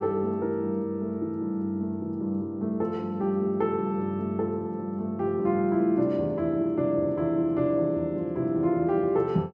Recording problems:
none

